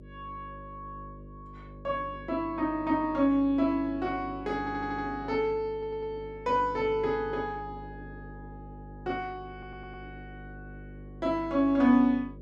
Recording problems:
hum; 50 Hz, harmonics up to 600 Hz, SNR 17 dB
audio stuttering; at 4.5 s, at 5.5 s and at 9.5 s

